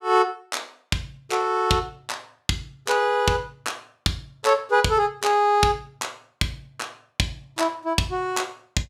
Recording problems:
none

